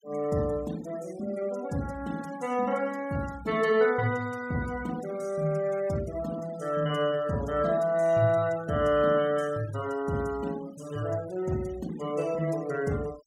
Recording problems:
denoising artefacts; signal-to-artefact ratio 20 dB

